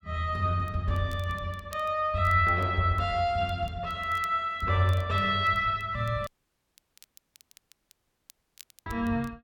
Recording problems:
crackling; vinyl, SNR 28 dB
dropout; at 6.5 s for 2.5 s

